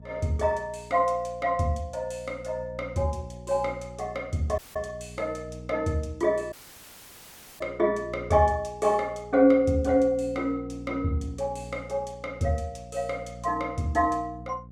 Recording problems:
hum; 60 Hz, harmonics up to 540 Hz, SNR 17 dB
dropout; at 4.5 s and at 6.5 s for 1 s

